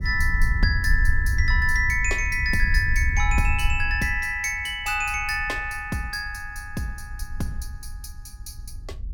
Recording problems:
wind noise; below 68 Hz, SNR 3 dB

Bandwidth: 17 kHz